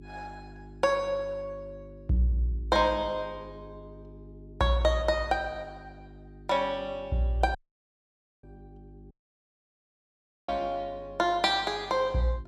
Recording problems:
hum; 50 Hz, harmonics up to 400 Hz, SNR 20 dB
audio cutting out; at 7.5 s for 1 s and at 9 s for 1.5 s

